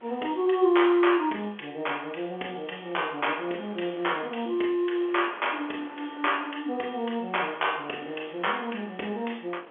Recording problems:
phone line; 260 Hz to 3.4 kHz, G.711
wind on the microphone; below 1.6 kHz, SNR 22 dB

